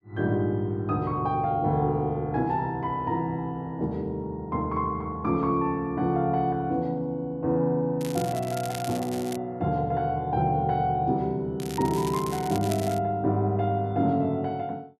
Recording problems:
crackling; from 8 to 9.5 s and from 12 to 13 s; loose cable, SNR 14 dB

